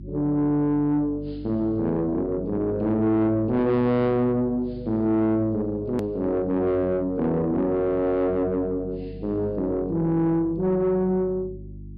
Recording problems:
treble cut off; nothing above 5.5 kHz
distortion; soft clipping, signal-to-distortion ratio 10 dB
electrical hum; 50 Hz, harmonics up to 350 Hz, SNR 17 dB
edit click; at 6 s

